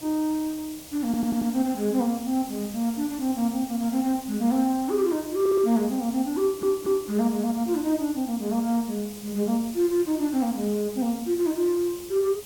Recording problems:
background hiss; SNR 15 dB
stutter; at 1 s, at 5.5 s and at 6.5 s

